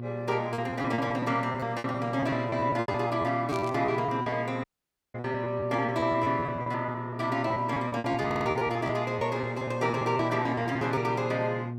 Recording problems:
hum; 60 Hz, harmonics up to 720 Hz, SNR 8 dB
lost packets; 15% of the sound replaced, filled with repeated pitch periods
burst of static; at 3.5 s; peak -9 dB vs average level
dropout; at 4.5 s for 0.5 s
audio stuttering; at 8.5 s

